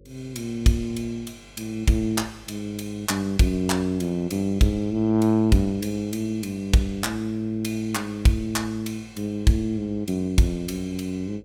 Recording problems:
electrical hum; 50 Hz, harmonics up to 550 Hz, SNR 28 dB

